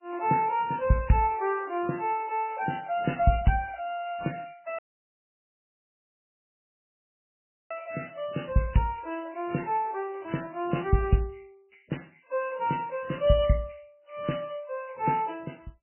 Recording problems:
lossy compression; MP3, log-spectral distance 8 dB, nothing above 2.9 kHz
dropout; at 5 s for 3 s

